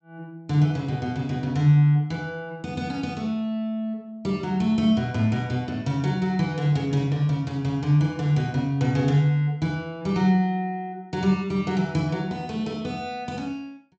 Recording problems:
low-pass filter; nothing above 8 kHz

